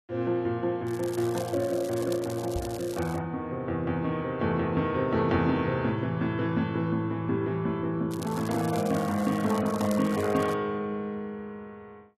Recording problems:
lossy compression; AAC, log-spectral distance 2 dB
crackle; from 1 to 3 s and from 8 to 11 s; loose cable, SNR 17 dB
microphone bump; at 2.5 s; peak -1 dB vs average level

